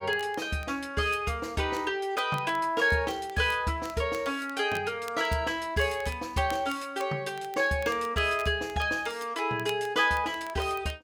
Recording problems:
crackling; vinyl, SNR 22 dB

